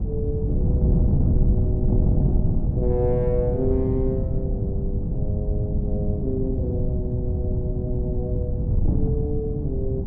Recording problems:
wind noise; below 150 Hz, SNR -5 dB

